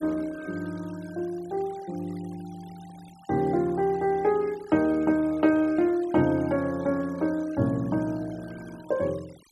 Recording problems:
noise reduction artefacts; signal-to-artefact ratio 24 dB

